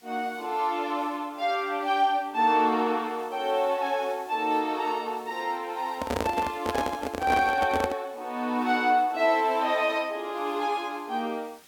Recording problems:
background hiss; slope 0 dB per octave, SNR 26 dB
microphone handling noise; from 6 to 8 s; peak +2 dB vs average level

